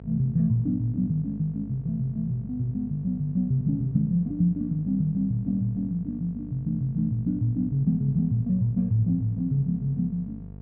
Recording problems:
hum; 50 Hz, harmonics up to 700 Hz, SNR 16 dB

